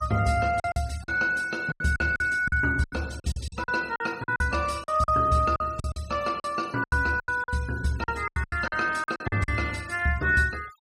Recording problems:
noise reduction artefacts; signal-to-artefact ratio 21 dB
packet loss; 14% of the sound replaced, filled with silence

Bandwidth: 15.5 kHz